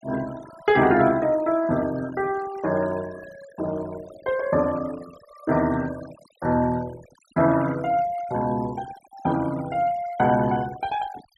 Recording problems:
noise reduction artefacts; signal-to-artefact ratio 18 dB

